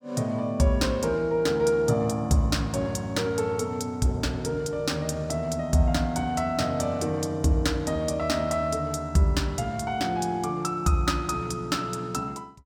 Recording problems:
none

